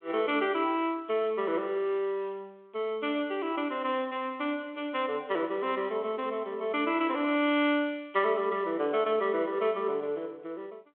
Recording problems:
telephone audio; 260 Hz to 3.4 kHz, G.726

